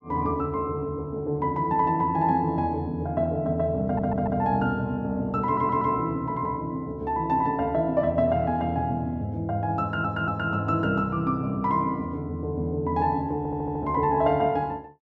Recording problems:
audio stuttering; 4 times, first at 4 s

